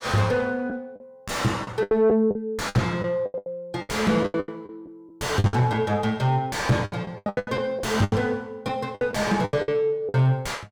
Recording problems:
distorted audio; soft clipping, signal-to-distortion ratio 5 dB
lost packets; 15% of the sound replaced, filled with the last packet

